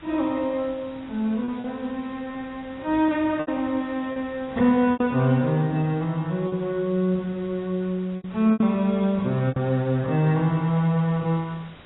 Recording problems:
codec artefacts; AAC, log-spectral distance 4 dB, nothing above 3.6 kHz
background hiss; SNR 23 dB
packet loss; 5% of the sound replaced, filled with repeated pitch periods

